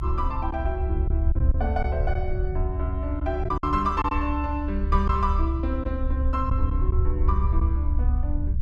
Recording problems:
rumble; below 70 Hz, SNR -3 dB
lost packets; 3% of the sound replaced, filled with silence

